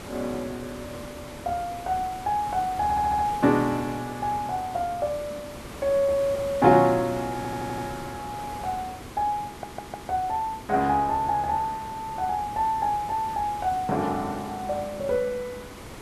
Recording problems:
background hiss; slope -5 dB per octave, SNR 13 dB
audio stuttering; at 3 s, at 7.5 s and at 9.5 s

